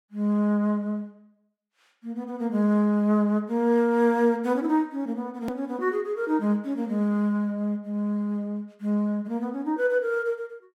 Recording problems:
hard cut with a click; at 5.5 s

